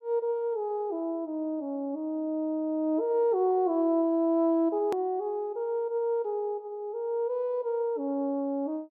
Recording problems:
treble cut off; nothing above 5.5 kHz
click at an edit; at 5 s

